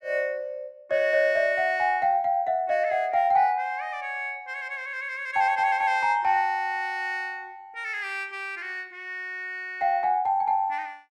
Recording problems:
none

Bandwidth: 13 kHz